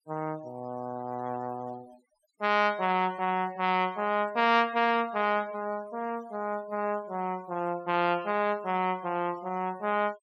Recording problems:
denoising artefacts; signal-to-artefact ratio 25 dB

